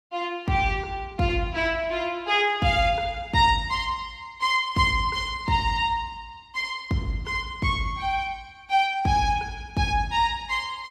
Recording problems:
none

